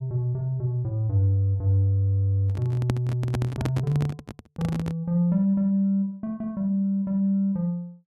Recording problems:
handling noise; from 2.5 to 5 s; peak +1 dB vs average level

